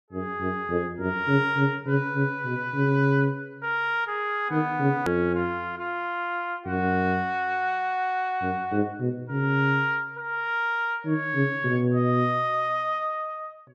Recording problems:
hard cut with a click; at 5 s

